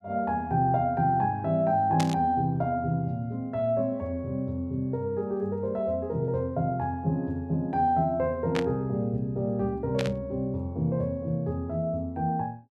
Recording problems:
burst of static; at 2 s, at 8.5 s and at 10 s; peak -1 dB vs average level

